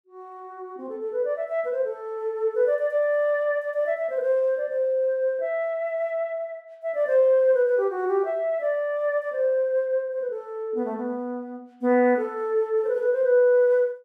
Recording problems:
none

